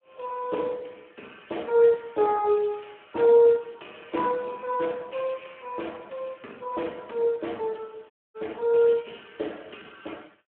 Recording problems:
phone line; 240 Hz to 3.6 kHz, Speex
dropout; at 8 s

